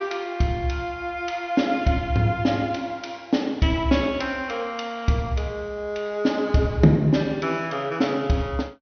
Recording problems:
treble cut off; nothing above 6.3 kHz

